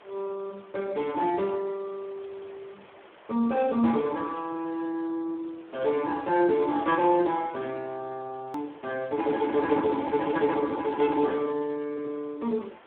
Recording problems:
telephone audio; 260 Hz to 3.5 kHz, Speex
background hiss; SNR 25 dB
click at an edit; at 8.5 s

